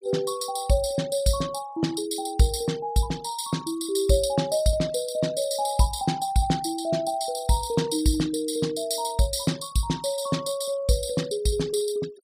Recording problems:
noise reduction artefacts; signal-to-artefact ratio 19 dB

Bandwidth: 15 kHz